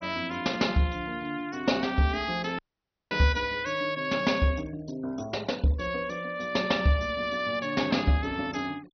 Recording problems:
treble missing; nothing above 6 kHz
denoising artefacts; signal-to-artefact ratio 24 dB
audio cutting out; at 2.5 s for 0.5 s

